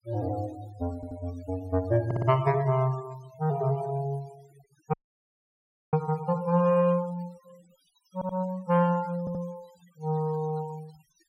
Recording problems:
denoising artefacts; signal-to-artefact ratio 24 dB
audio stuttering; 4 times, first at 1 s
audio cutting out; at 5 s for 1 s

